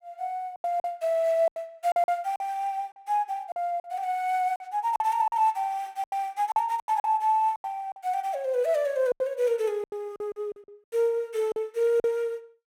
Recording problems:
lost packets; 11% of the sound replaced, filled with silence

